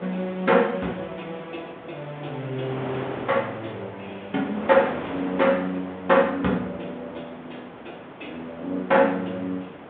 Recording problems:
phone line; 190 Hz to 3.6 kHz, G.726
wind on the microphone; below 1.2 kHz, SNR 14 dB

